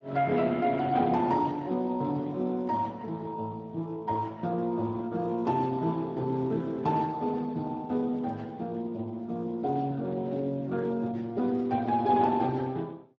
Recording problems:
lossy codec; Speex, log-spectral distance 2 dB

